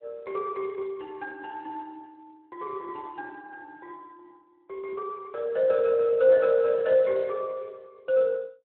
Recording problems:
telephone audio; 280 Hz to 2.9 kHz, Speex

